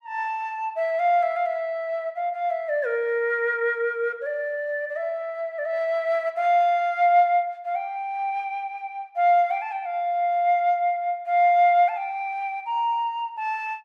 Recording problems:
none

